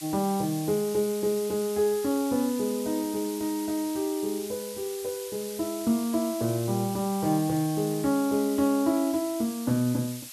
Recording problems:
hiss; slope +4 dB per octave, SNR 12 dB

